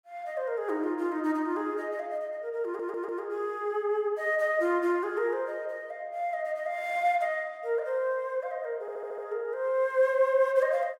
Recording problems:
audio stuttering; at 2.5 s and at 9 s

